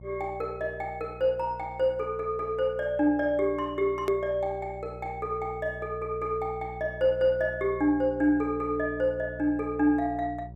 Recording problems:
electrical hum; 60 Hz, harmonics up to 600 Hz, SNR 17 dB
click at an edit; at 4 s

